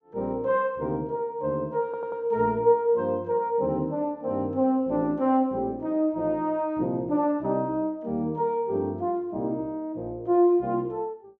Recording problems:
audio stuttering; at 2 s

